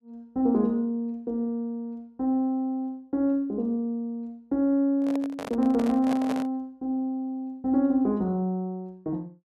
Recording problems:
handling noise; from 5 to 6.5 s; peak -3 dB vs average level

